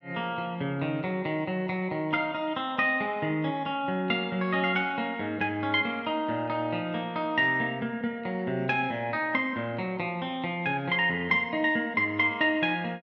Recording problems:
none

